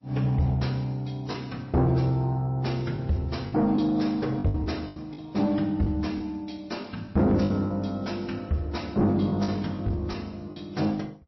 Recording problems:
codec artefacts; MP3, log-spectral distance 2 dB, nothing above 5.7 kHz
distorted audio; soft clipping, signal-to-distortion ratio 11 dB
packet loss; 6% of the sound replaced, filled with the last packet

